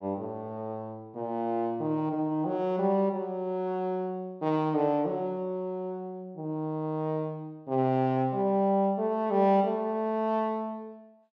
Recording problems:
none

